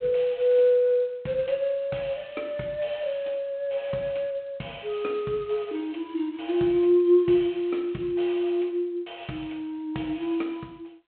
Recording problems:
phone line; 170 Hz to 3.8 kHz, G.726

